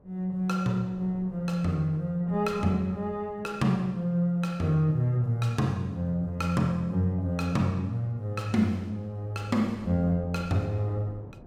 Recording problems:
wind noise; below 430 Hz, SNR 24 dB

